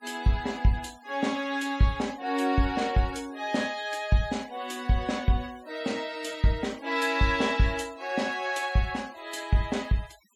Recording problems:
noise reduction artefacts; signal-to-artefact ratio 22 dB

